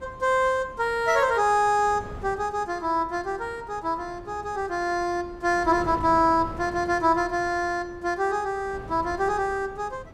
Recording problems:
wind noise; below 490 Hz, SNR 18 dB

